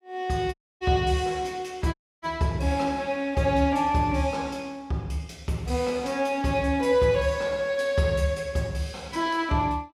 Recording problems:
dropout; at 0.5 s and at 2 s

